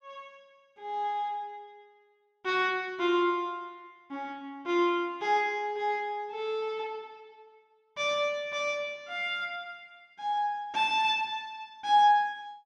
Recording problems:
none

